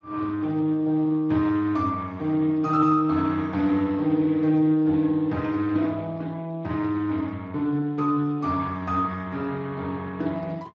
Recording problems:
lossy codec; Speex, log-spectral distance 2 dB

